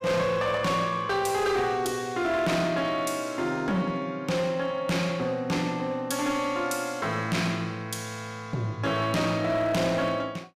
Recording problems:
distorted audio; hard clipping, signal-to-distortion ratio 11 dB

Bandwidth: 15 kHz